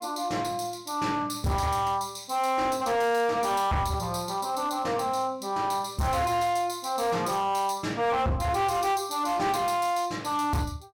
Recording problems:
distortion; hard clipping, signal-to-distortion ratio 10 dB

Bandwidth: 17 kHz